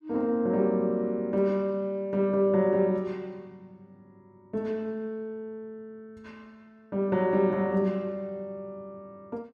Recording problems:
none

